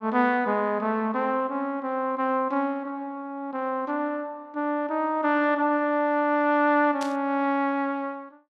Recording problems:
burst of static; at 7 s; peak -7 dB vs average level

